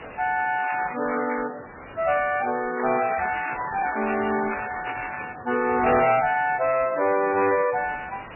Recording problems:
codec artefacts; MP3, log-spectral distance 17 dB, nothing above 2.4 kHz
distorted audio; hard clipping, uneven, signal-to-distortion ratio 9 dB
hiss; SNR 17 dB
crackle; at 0.5 s and from 3 to 5 s; loose cable, SNR 10 dB

